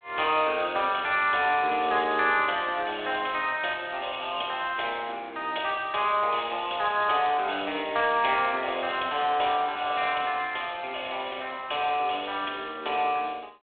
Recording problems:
phone line; 280 Hz to 3.5 kHz, G.726

